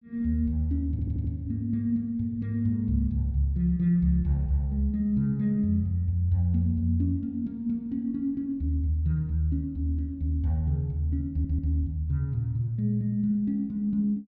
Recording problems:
stutter; at 1 s and at 11 s

